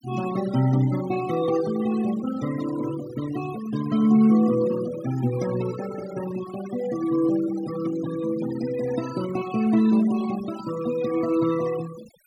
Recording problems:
noise reduction artefacts; signal-to-artefact ratio 15 dB

